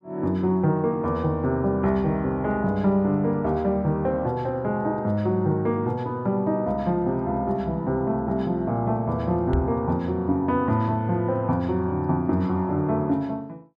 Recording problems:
microphone thump; at 9.5 s; peak +3 dB vs average level

